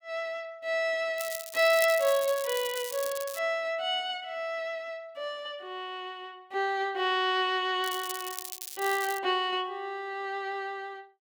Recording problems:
crackle; from 1 to 3.5 s and from 8 to 9 s; loose cable, SNR 9 dB

